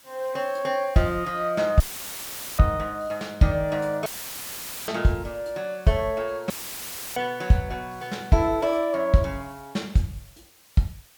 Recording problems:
hiss; slope 0 dB per octave, SNR 25 dB
dropout; at 2 s for 1 s, at 4 s for 1 s and at 6.5 s for 0.5 s; filled with static

